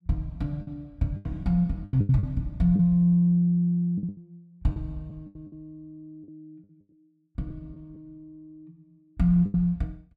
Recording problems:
packet loss; 10% of the sound replaced, filled with the last packet

